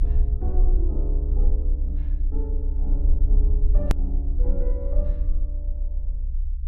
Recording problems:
rumble; below 62 Hz, SNR -12 dB
edit click; at 4 s

